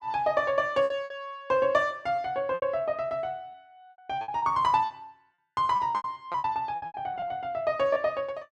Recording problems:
lost packets; 12% of the sound replaced, filled with repeated pitch periods

